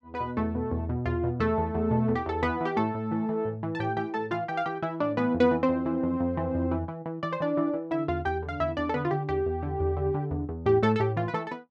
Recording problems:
none

